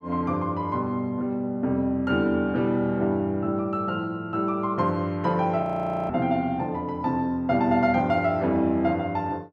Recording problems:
frozen audio; at 5.5 s

